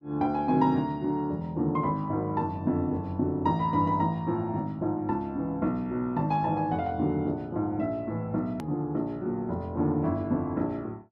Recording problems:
edit click; at 8.5 s

